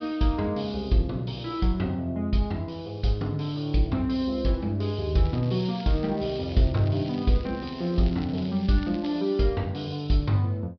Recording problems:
treble cut off; nothing above 5.5 kHz
crackle; from 5.5 to 9 s; loose cable, SNR 21 dB

